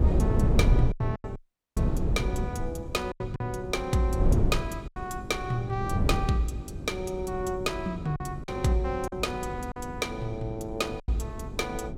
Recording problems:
hum; 50 Hz, harmonics up to 400 Hz, SNR 13 dB
wind on the microphone; below 150 Hz, SNR 0 dB
lost packets; 5% of the sound replaced, filled with silence
dropout; at 1.5 s

